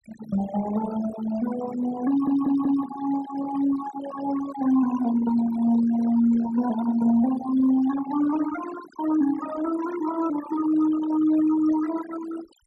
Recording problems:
denoising artefacts; signal-to-artefact ratio 11 dB
stutter; at 2 s

